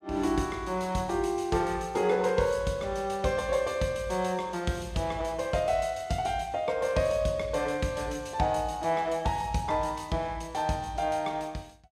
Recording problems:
none

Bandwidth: 14.5 kHz